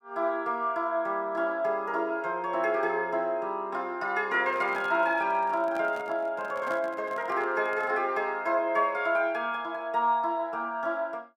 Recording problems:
handling noise; from 4.5 to 8 s; peak -8 dB vs average level

